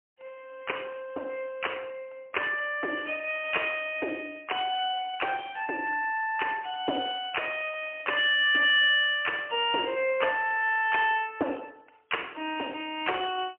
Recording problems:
telephone audio; 260 Hz to 3.1 kHz, AMR-NB, then MP3

